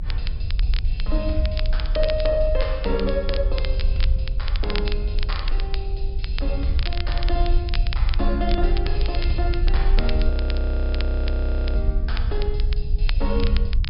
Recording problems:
low-pass filter; nothing above 5.5 kHz
low-frequency rumble; below 56 Hz, strongest tone 28 Hz, SNR -3 dB
crackling; vinyl, SNR 8 dB
audio freezing; at 10 s for 1.5 s

